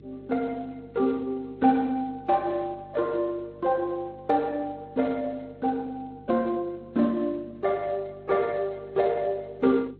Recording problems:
lossy compression; Speex, then AAC, log-spectral distance 2 dB, nothing above 3.9 kHz
electrical hum; 50 Hz, harmonics up to 450 Hz, SNR 22 dB

